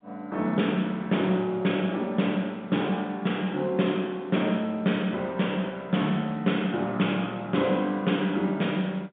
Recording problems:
phone line; 110 Hz to 3.6 kHz, G.711

